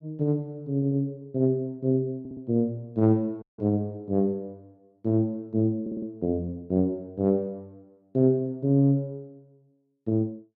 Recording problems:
audio stuttering; at 0.5 s, at 2 s and at 6 s
dropout; at 3.5 s

